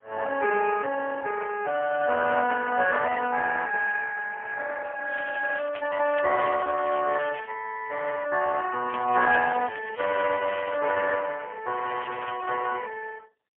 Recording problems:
phone line; 320 Hz to 2.5 kHz, AMR-NB, then MP3
crackle; from 5 to 7.5 s, from 9 to 11 s and at 12 s; loose cable, SNR 18 dB

